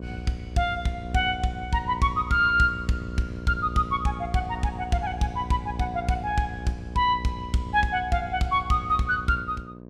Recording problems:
hum; 60 Hz, harmonics up to 1.1 kHz, SNR 14 dB

